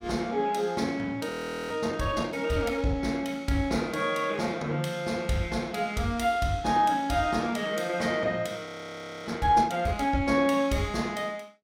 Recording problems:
audio freezing; at 1.5 s and at 8.5 s for 0.5 s

